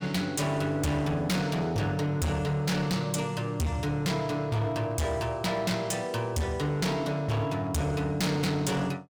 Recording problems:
distorted audio; hard clipping, signal-to-distortion ratio 6 dB

